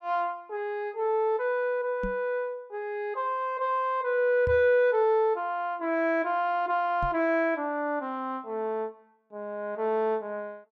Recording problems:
microphone thump; at 2 s, at 4.5 s and at 7 s; peak -3 dB vs average level

